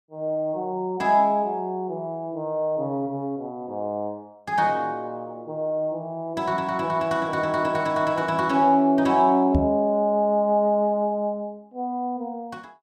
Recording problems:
microphone thump; at 9.5 s; peak +4 dB vs average level

